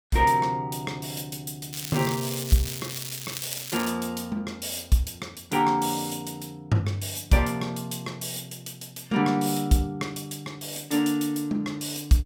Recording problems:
crackling; from 1.5 to 4 s; loose cable, SNR 7 dB

